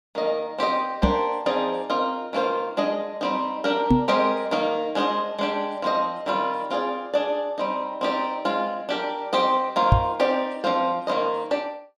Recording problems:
knock on the microphone; at 1 s, at 4 s and at 10 s; peak +9 dB vs average level

